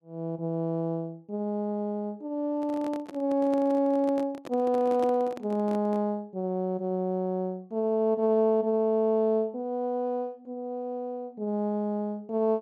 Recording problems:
microphone handling noise; from 2.5 to 6 s; peak -5 dB vs average level

